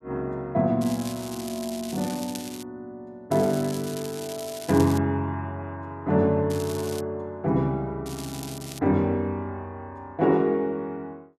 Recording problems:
crackling; 4 times, first at 1 s; loose cable, SNR 13 dB

